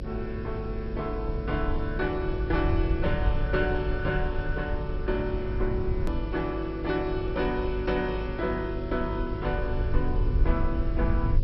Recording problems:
lossy compression; MP2, log-spectral distance 3 dB, nothing above 4.5 kHz
electrical hum; 50 Hz, harmonics up to 550 Hz, SNR 6 dB
background hiss; SNR 27 dB
rumble; below 76 Hz, SNR 3 dB
click at an edit; at 6 s

